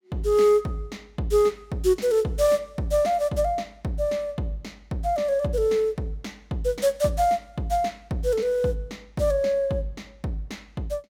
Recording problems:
none

